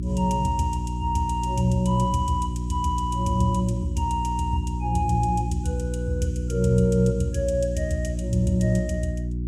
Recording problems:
hum; 60 Hz, harmonics up to 360 Hz, SNR 4 dB

